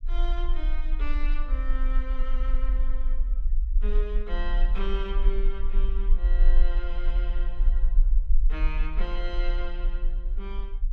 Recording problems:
low-frequency rumble; below 38 Hz, strongest tone 22 Hz, SNR -10 dB

